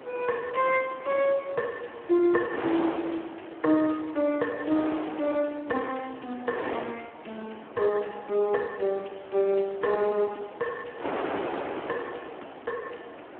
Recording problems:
telephone audio; 260 Hz to 2.9 kHz, Speex
wind on the microphone; below 1 kHz, SNR 10 dB

